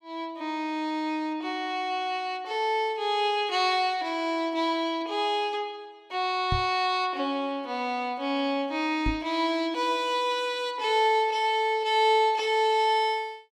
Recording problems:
microphone thump; at 6.5 s and at 9 s; peak +1 dB vs average level

